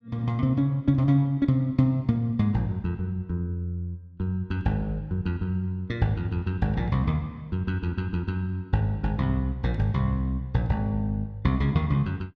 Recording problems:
none

